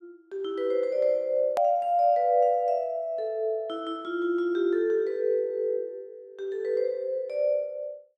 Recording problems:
edit click; at 1.5 s

